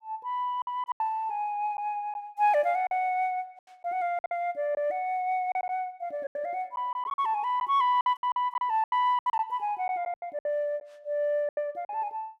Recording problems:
lost packets; 11% of the sound replaced, filled with silence

